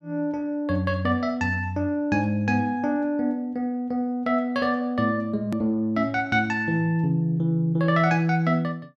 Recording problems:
hard cut with a click; at 5.5 s

